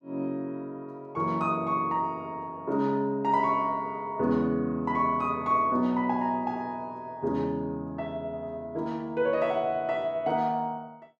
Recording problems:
none

